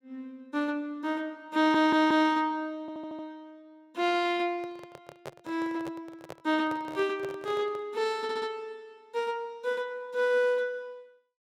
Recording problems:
stutter; at 1.5 s, at 3 s and at 8 s
handling noise; from 4.5 to 8 s; peak -7 dB vs average level

